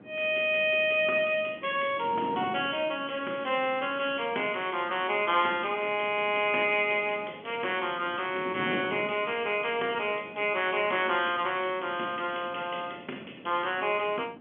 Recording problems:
phone line; 220 Hz to 3.3 kHz, G.711
wind on the microphone; below 500 Hz, SNR 18 dB

